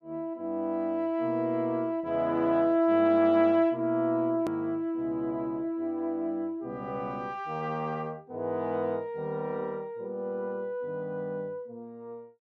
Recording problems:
hard cut with a click; at 4.5 s

